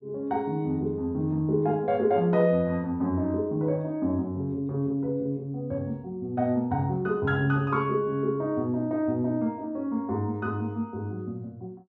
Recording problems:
treble missing; nothing above 8 kHz

